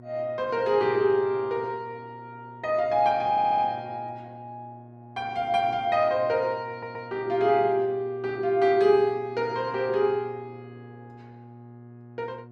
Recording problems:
electrical hum; 60 Hz, harmonics up to 720 Hz, SNR 21 dB
audio stuttering; at 3.5 s and at 6.5 s

